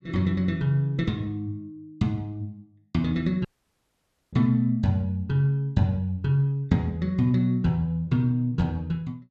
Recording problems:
audio cutting out; at 3.5 s for 1 s

